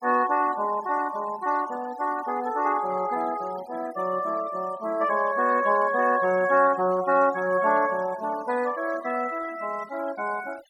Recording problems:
noise reduction artefacts; signal-to-artefact ratio 19 dB

